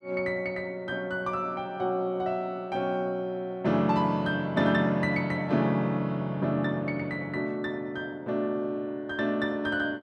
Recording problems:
none

